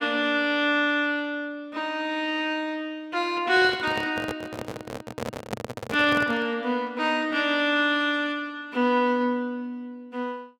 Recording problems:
handling noise; from 3.5 to 6.5 s; peak -2 dB vs average level

